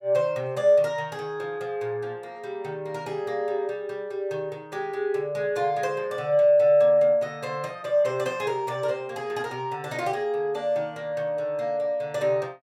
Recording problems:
none

